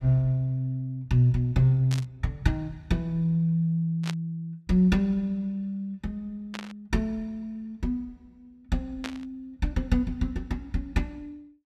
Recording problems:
static burst; 4 times, first at 2 s; peak -3 dB vs average level

